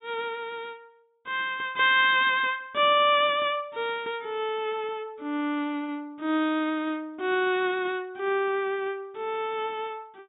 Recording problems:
low-pass filter; nothing above 4 kHz

